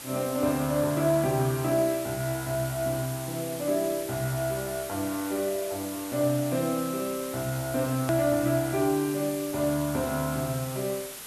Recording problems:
hiss; slope 0 dB per octave, SNR 10 dB
hard cut with a click; at 8 s

